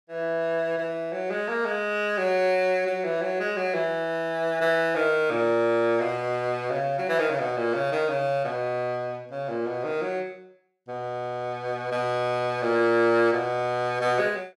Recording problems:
none

